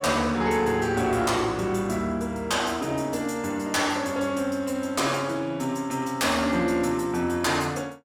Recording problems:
distortion; soft clipping, signal-to-distortion ratio 12 dB

